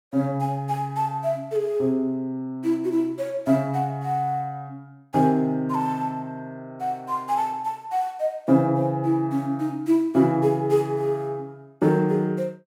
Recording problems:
none

